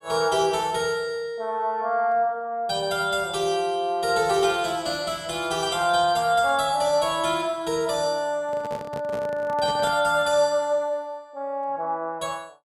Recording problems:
handling noise; from 8.5 to 10 s; peak -8 dB vs average level

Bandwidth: 14.5 kHz